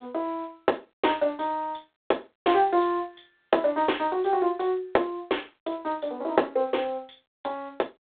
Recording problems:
telephone audio; 320 Hz to 3.6 kHz, G.726

